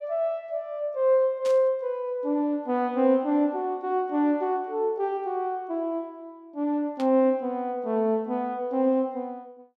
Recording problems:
static burst; at 1.5 s and at 7 s; peak -11 dB vs average level

